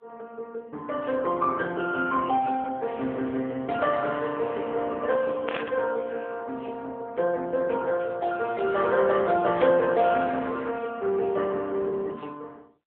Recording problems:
telephone audio; 260 Hz to 3.5 kHz, AMR-NB
burst of static; at 5.5 s and at 9.5 s; peak -2 dB vs average level

